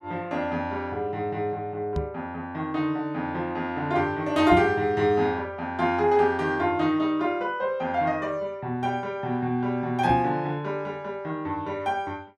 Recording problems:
microphone thump; at 2 s, at 4.5 s and at 10 s; peak +1 dB vs average level

